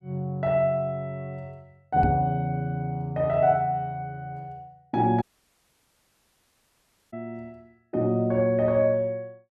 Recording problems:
microphone bump; at 2 s; peak +1 dB vs average level
dropout; at 5 s for 2 s

